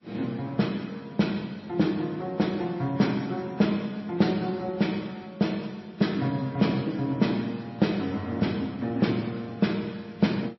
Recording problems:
lossy codec; MP3, then MP3, log-spectral distance 3 dB, nothing above 5.7 kHz

